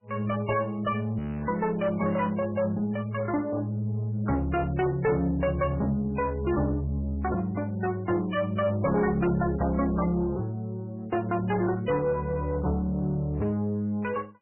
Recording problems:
lossy compression; MP3, log-spectral distance 2 dB, nothing above 2.4 kHz
distortion; soft clipping, signal-to-distortion ratio 11 dB
frozen audio; at 1 s

